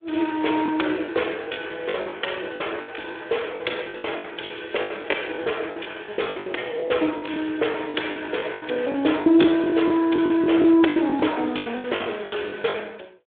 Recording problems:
telephone audio; 300 Hz to 3.5 kHz, Speex
packet loss; 17% of the sound replaced, filled with the last packet

